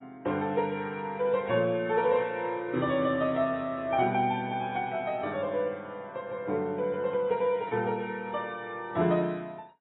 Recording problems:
lossy codec; AAC, log-spectral distance 2 dB, nothing above 3.2 kHz

